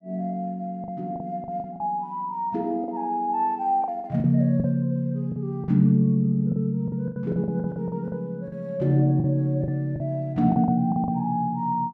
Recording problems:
packet loss; 10% of the sound replaced, filled with the last packet

